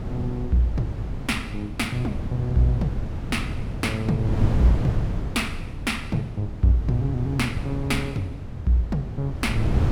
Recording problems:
wind on the microphone; below 150 Hz, SNR 4 dB

